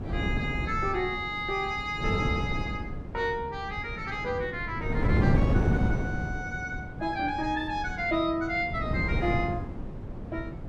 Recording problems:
wind noise; below 260 Hz, SNR 1 dB

